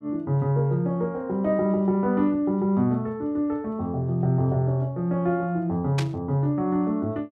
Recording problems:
static burst; at 6 s; peak -3 dB vs average level

